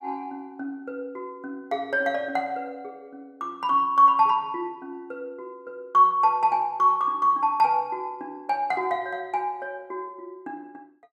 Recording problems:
none

